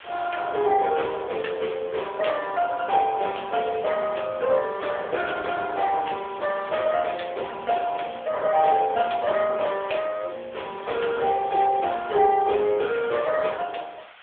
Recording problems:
phone line; 340 Hz to 3.4 kHz, AMR-NB
background hiss; SNR 21 dB

